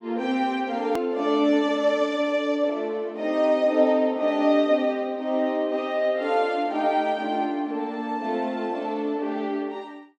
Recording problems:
click at an edit; at 1 s

